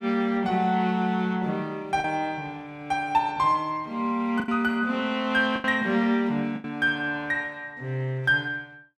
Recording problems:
lost packets; 3% of the sound replaced, filled with the last packet

